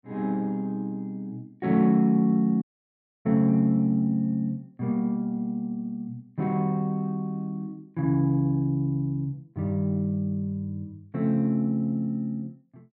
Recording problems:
audio cutting out; at 2.5 s for 0.5 s

